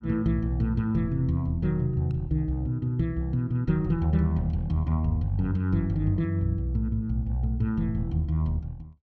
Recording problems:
none

